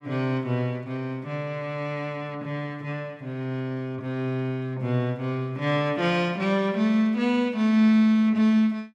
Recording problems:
none

